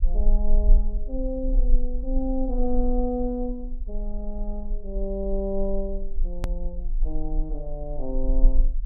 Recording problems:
low-frequency rumble; below 34 Hz, strongest tone 20 Hz, SNR -2 dB
click at an edit; at 6.5 s

